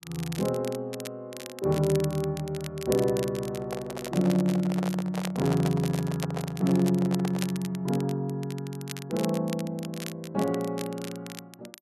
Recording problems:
crackle; vinyl, SNR 14 dB
microphone handling noise; from 3.5 to 7.5 s; peak -3 dB vs average level

